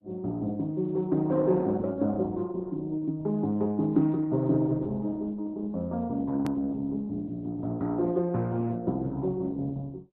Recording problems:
lossy compression; Opus, log-spectral distance 2 dB, nothing above 13.1 kHz
click at an edit; at 6.5 s

